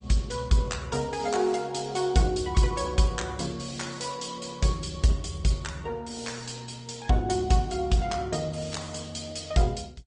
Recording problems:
lossy compression; MP2, then Opus, log-spectral distance 7 dB, nothing above 8.7 kHz

